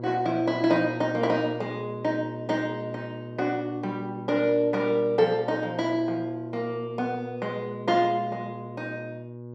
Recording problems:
electrical hum; 60 Hz, harmonics up to 1.1 kHz, SNR 12 dB

